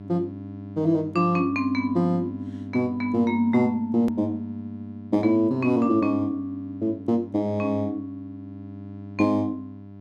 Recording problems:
hum; 50 Hz, harmonics up to 1 kHz, SNR 15 dB
hard cut with a click; at 4 s

